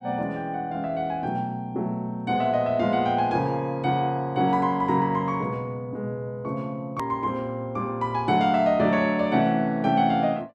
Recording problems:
click at an edit; at 7 s

